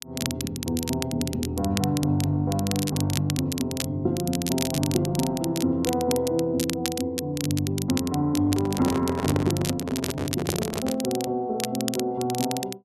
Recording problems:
crackle; vinyl, SNR 7 dB
handling noise; from 8.5 to 11 s; peak +3 dB vs average level

